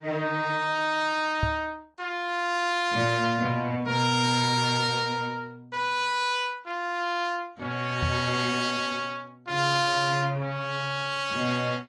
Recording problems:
lossy compression; AAC, then AAC, log-spectral distance 2 dB
knock on the microphone; at 1.5 s and at 8 s; peak +2 dB vs average level

